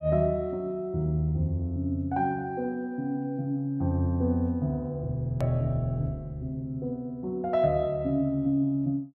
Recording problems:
click at an edit; at 5.5 s

